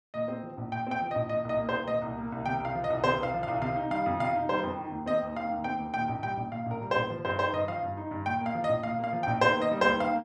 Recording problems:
none

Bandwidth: 12 kHz